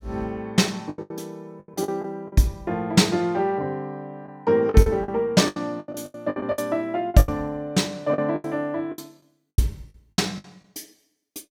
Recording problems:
lost packets; 13% of the sound replaced, filled with the last packet

